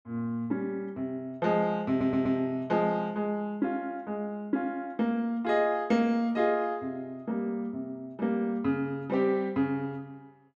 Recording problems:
stutter; at 2 s

